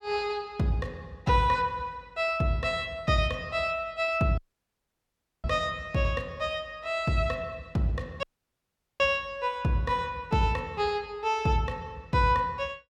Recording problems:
dropout; at 4.5 s for 1 s and at 8 s for 1 s

